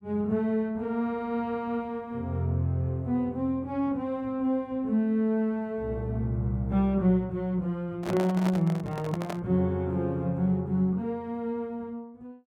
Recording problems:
microphone handling noise; from 8 to 9.5 s; peak -2 dB vs average level

